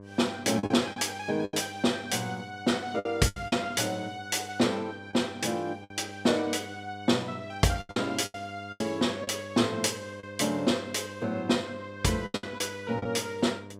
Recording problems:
hum; 50 Hz, harmonics up to 1.6 kHz, SNR 17 dB
lost packets; 7% of the sound replaced, filled with the last packet

